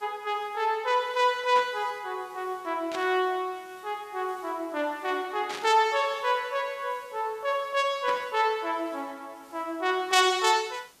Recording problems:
hiss; slope -2 dB per octave, SNR 28 dB
burst of static; 4 times, first at 1.5 s; peak -5 dB vs average level

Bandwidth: 14.5 kHz